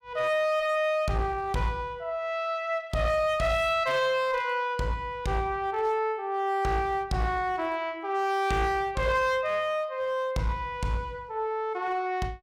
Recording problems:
distorted audio; hard clipping, uneven, signal-to-distortion ratio 11 dB

